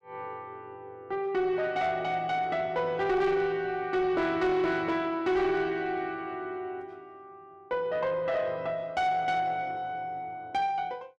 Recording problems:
distortion; soft clipping, signal-to-distortion ratio 11 dB

